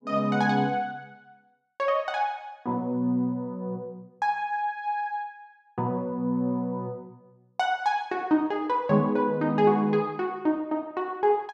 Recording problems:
none

